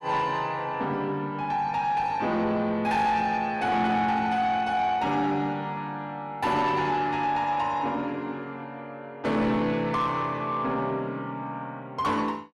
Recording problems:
distortion; soft clipping, signal-to-distortion ratio 12 dB

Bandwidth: 13.5 kHz